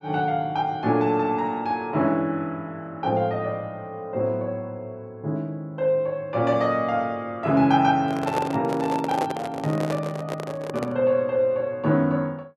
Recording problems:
microphone handling noise; from 8 to 11 s; peak +2 dB vs average level

